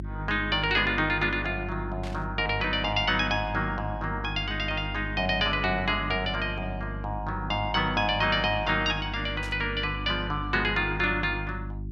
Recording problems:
hum; 50 Hz, harmonics up to 350 Hz, SNR 9 dB
static burst; at 2 s and at 9.5 s; peak -11 dB vs average level

